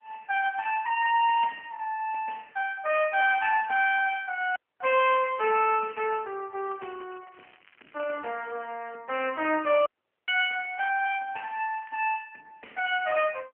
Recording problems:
telephone audio; 260 Hz to 3.1 kHz, AMR-NB
crackling; at 0.5 s, from 6.5 to 9 s and at 12 s; loose cable, SNR 28 dB
dropout; at 4.5 s and at 10 s

